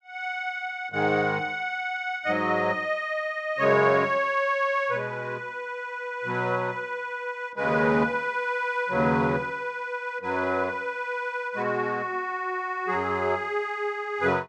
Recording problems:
none

